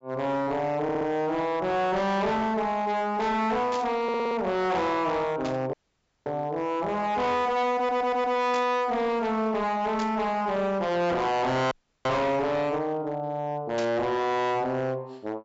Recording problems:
low-pass filter; nothing above 8 kHz
distortion; hard clipping, signal-to-distortion ratio 6 dB
audio stuttering; at 1 s, at 4 s and at 8 s
burst of static; 5 times, first at 3.5 s; peak -6 dB vs average level
dropout; at 5.5 s for 0.5 s and at 12 s

